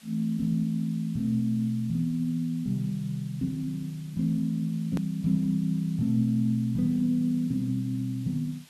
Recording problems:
background hiss; slope +1 dB per octave, SNR 25 dB
click at an edit; at 5 s

